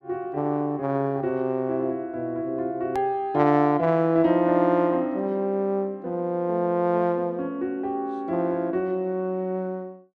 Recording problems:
click at an edit; at 3 s

